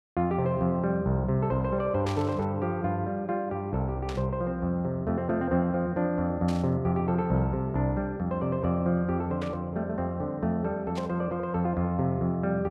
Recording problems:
static burst; 5 times, first at 2 s; peak -8 dB vs average level

